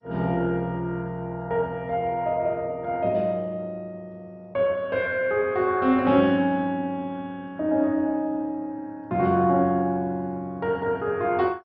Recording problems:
codec artefacts; MP2, log-spectral distance 2 dB, nothing above 4.6 kHz

